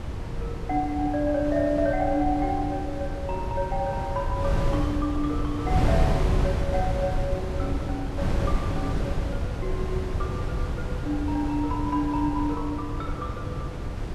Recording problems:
wind on the microphone; below 180 Hz, SNR 1 dB

